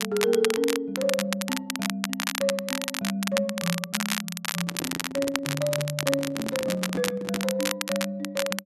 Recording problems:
crackle; vinyl, SNR 2 dB
microphone handling noise; from 4.5 to 7.5 s; peak 0 dB vs average level

